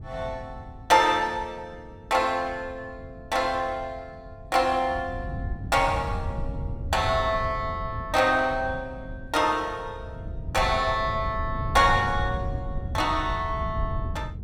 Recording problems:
wind on the microphone; below 120 Hz, SNR 10 dB

